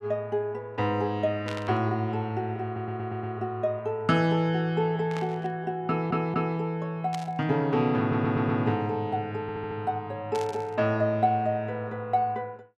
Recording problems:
static burst; 4 times, first at 1.5 s; peak -7 dB vs average level
stutter; 4 times, first at 2.5 s

